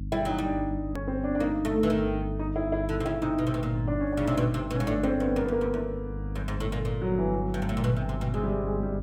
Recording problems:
electrical hum; 50 Hz, harmonics up to 300 Hz, SNR 7 dB
edit click; at 1 s

